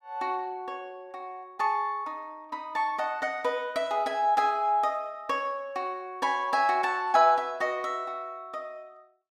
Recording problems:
none

